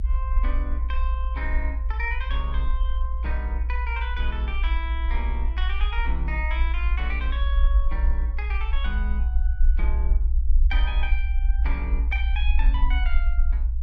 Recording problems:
rumble; below 58 Hz, SNR -8 dB

